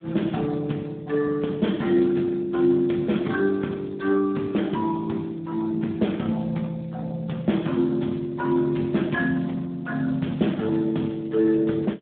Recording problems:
phone line; 150 Hz to 3.8 kHz, Speex

